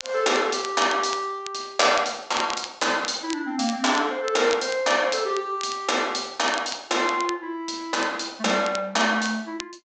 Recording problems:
low-pass filter; nothing above 8 kHz
crackle; vinyl, SNR 14 dB

